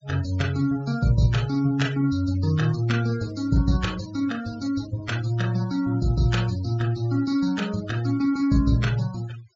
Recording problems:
treble missing; nothing above 8 kHz
noise reduction artefacts; signal-to-artefact ratio 18 dB

